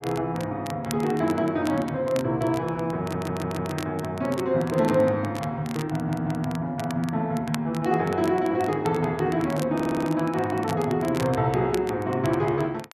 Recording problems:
crackle; vinyl, SNR 17 dB
stutter; at 3 s, at 6 s and at 10 s

